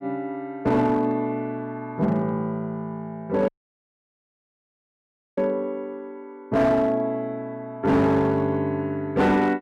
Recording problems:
distorted audio; hard clipping, signal-to-distortion ratio 11 dB
dropout; at 3.5 s for 2 s

